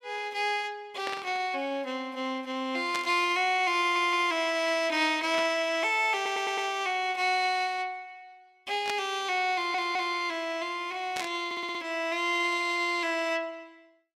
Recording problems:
burst of static; 5 times, first at 1 s; peak -2 dB vs average level
stutter; 4 times, first at 4 s

